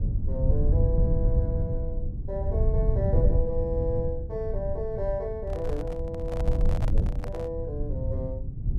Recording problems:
low-frequency rumble; below 96 Hz, SNR -5 dB
handling noise; from 5.5 to 7.5 s; peak -2 dB vs average level

